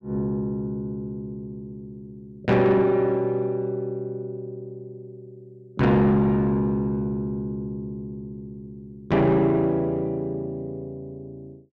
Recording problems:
distorted audio; soft clipping, signal-to-distortion ratio 11 dB

